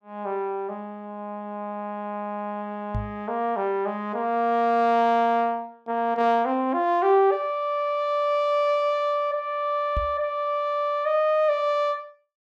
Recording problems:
knock on the microphone; at 3 s and at 10 s; peak -1 dB vs average level

